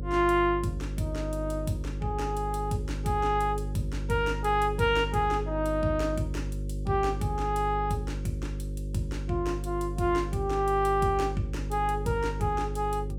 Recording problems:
electrical hum; 50 Hz, harmonics up to 550 Hz, SNR 6 dB

